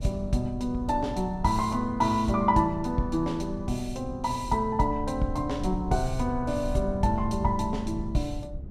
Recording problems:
low-frequency rumble; below 98 Hz, SNR 11 dB

